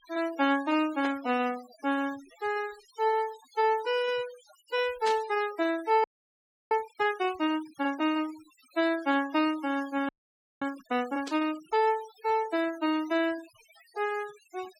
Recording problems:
denoising artefacts; signal-to-artefact ratio 19 dB
static burst; at 1 s, at 5 s and at 11 s; peak -3 dB vs average level
frozen audio; at 6 s for 0.5 s and at 10 s for 0.5 s

